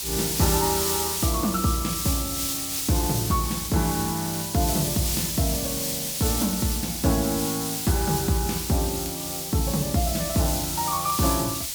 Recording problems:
background hiss; SNR 1 dB
crackling; vinyl, SNR 28 dB

